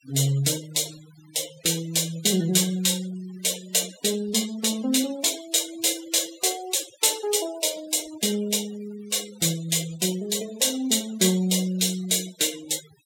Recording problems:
noise reduction artefacts; signal-to-artefact ratio 17 dB

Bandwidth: 17 kHz